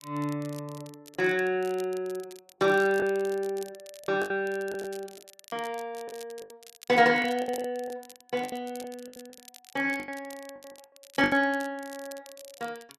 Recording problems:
crackling; vinyl, SNR 21 dB
packet loss; 10% of the sound replaced, filled with the last packet

